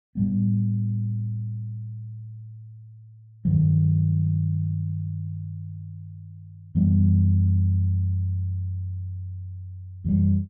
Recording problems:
none

